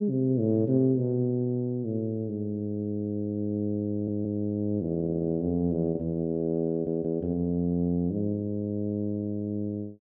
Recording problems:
lost packets; 0.4% of the sound replaced, filled with repeated pitch periods
stutter; at 4 s, at 5 s and at 6.5 s

